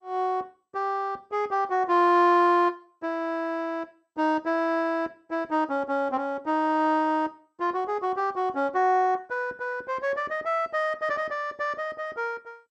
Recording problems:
lossy codec; MP2, log-spectral distance 2 dB

